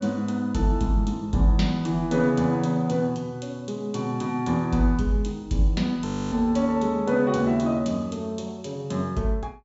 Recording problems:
treble missing; nothing above 8 kHz
frozen audio; at 6 s

